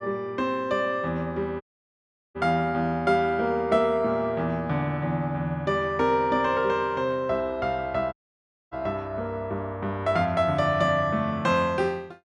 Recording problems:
dropout; at 1.5 s for 0.5 s and at 8 s for 0.5 s

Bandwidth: 12 kHz